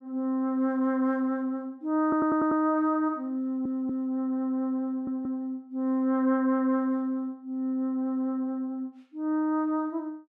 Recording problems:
audio stuttering; at 2 s, at 3.5 s and at 5 s

